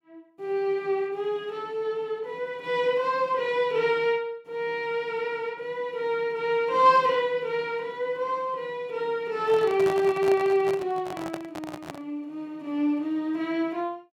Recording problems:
microphone handling noise; from 9.5 to 12 s; peak -4 dB vs average level

